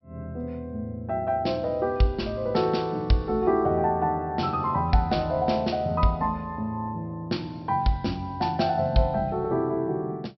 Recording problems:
treble missing; nothing above 5.3 kHz

